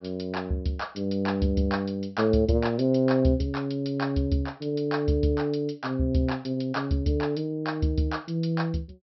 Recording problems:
treble missing; nothing above 5.6 kHz

